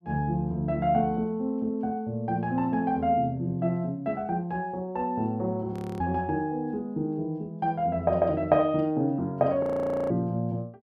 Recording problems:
audio freezing; at 5.5 s and at 9.5 s

